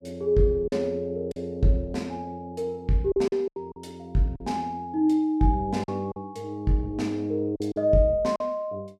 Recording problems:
lost packets; 6% of the sound replaced, filled with silence

